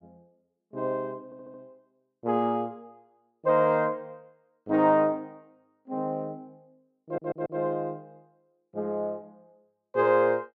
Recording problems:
stutter; at 1.5 s and at 7 s

